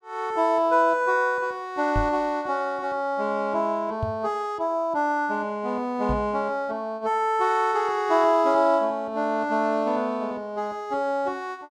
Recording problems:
microphone bump; at 2 s, at 4 s and at 6 s; peak -1 dB vs average level

